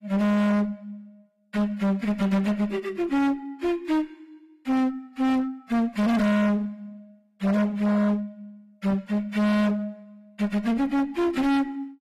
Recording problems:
lossy codec; AAC, log-spectral distance 2 dB, nothing above 14.7 kHz
distortion; hard clipping, uneven, signal-to-distortion ratio 5 dB

